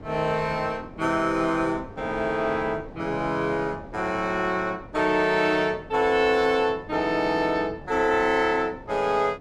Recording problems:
wind on the microphone; below 510 Hz, SNR 19 dB

